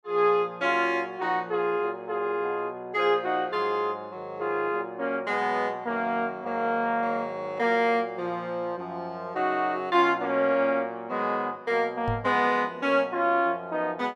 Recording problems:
knock on the microphone; at 12 s; peak -1 dB vs average level

